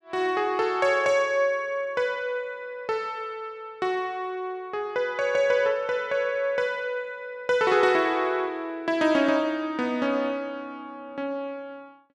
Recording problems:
none

